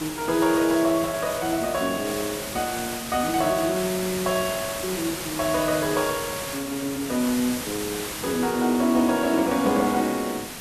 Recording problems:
background hiss; slope -2 dB per octave, SNR 7 dB

